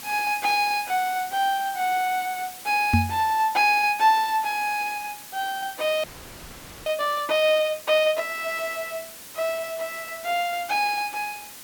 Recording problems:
hiss; slope 0 dB per octave, SNR 15 dB
knock on the microphone; at 3 s; peak +6 dB vs average level
audio freezing; at 6 s for 1 s

